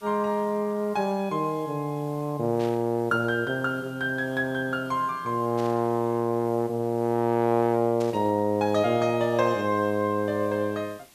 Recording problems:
hiss; slope -1 dB per octave, SNR 27 dB
static burst; at 2.5 s, at 5.5 s and at 8 s; peak -12 dB vs average level

